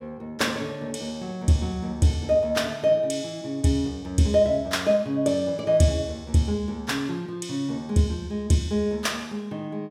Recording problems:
none

